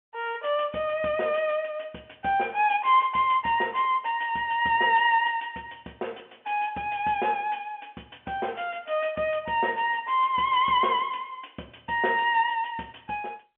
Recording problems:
telephone audio; 280 Hz to 3.3 kHz, G.711

